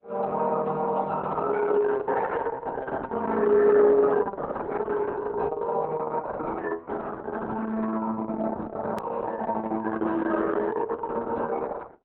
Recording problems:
lossy codec; Opus, log-spectral distance 3 dB, nothing above 17.7 kHz
edit click; at 9 s

